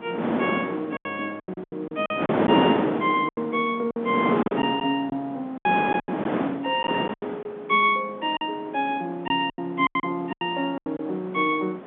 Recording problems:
phone line; 170 Hz to 3.7 kHz, G.711
wind on the microphone; below 780 Hz, SNR 1 dB
lost packets; 11% of the sound replaced, filled with silence

